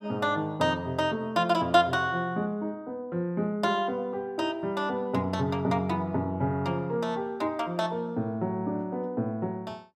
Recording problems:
none

